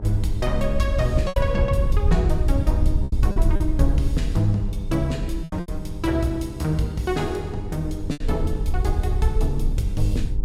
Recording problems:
hum; 50 Hz, harmonics up to 1 kHz, SNR 14 dB
wind on the microphone; below 70 Hz, SNR 0 dB
packet loss; 5% of the sound replaced, filled with repeated pitch periods

